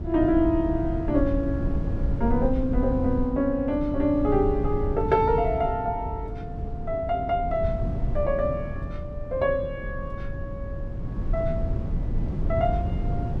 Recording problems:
rumble; below 130 Hz, SNR 5 dB

